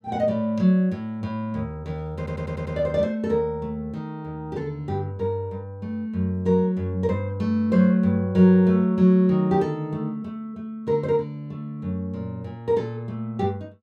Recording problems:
stutter; at 2 s

